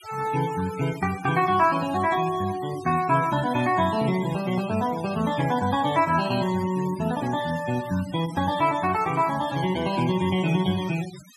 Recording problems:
denoising artefacts; signal-to-artefact ratio 16 dB

